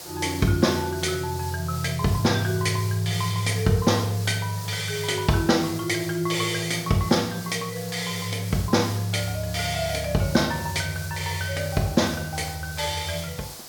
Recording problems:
hiss; SNR 13 dB

